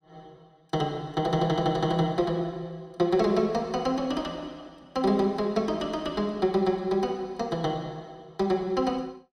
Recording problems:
none

